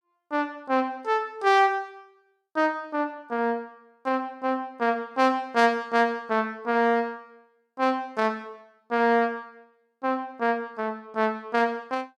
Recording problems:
none

